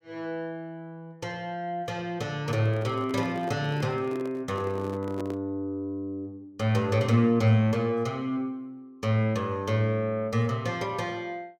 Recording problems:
microphone handling noise; from 2.5 to 5.5 s; peak -4 dB vs average level

